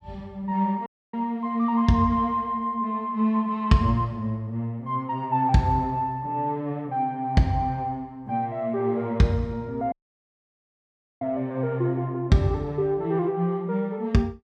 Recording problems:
audio cutting out; at 1 s and at 10 s for 1.5 s

